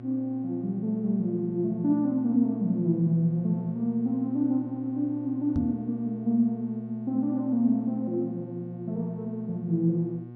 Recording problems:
hum; 60 Hz, harmonics up to 720 Hz, SNR 14 dB
microphone bump; at 5.5 s; peak 0 dB vs average level

